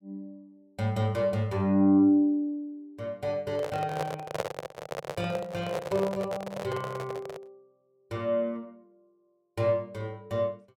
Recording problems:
handling noise; from 3.5 to 7.5 s; peak +2 dB vs average level

